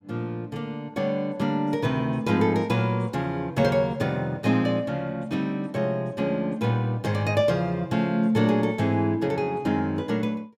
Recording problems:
none

